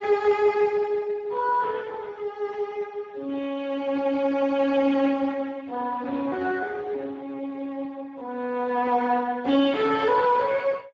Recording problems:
lossy codec; Speex, log-spectral distance 3 dB

